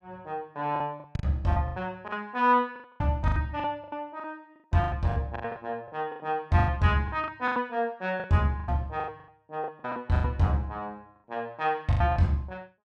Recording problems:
lost packets; 15% of the sound replaced, filled with the last packet

